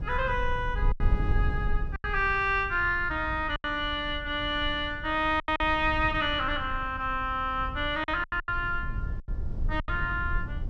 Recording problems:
low-frequency rumble; below 78 Hz, SNR 7 dB
packet loss; 6% of the sound replaced, filled with silence

